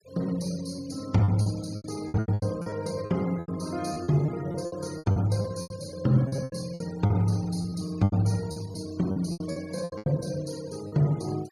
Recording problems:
denoising artefacts; signal-to-artefact ratio 21 dB
lost packets; 15% of the sound replaced, filled with repeated pitch periods

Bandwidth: 15 kHz